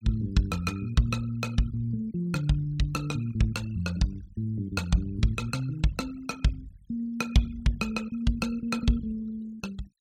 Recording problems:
noise reduction artefacts; signal-to-artefact ratio 21 dB

